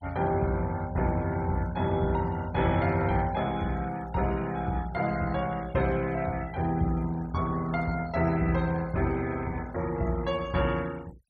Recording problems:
noise reduction artefacts; signal-to-artefact ratio 21 dB

